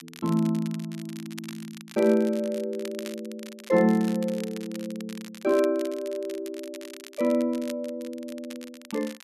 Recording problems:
crackle; vinyl, SNR 18 dB

